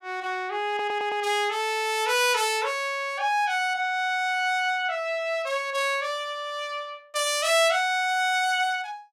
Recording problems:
stutter; at 0.5 s

